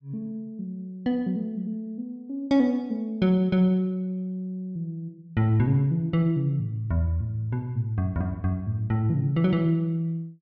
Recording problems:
none

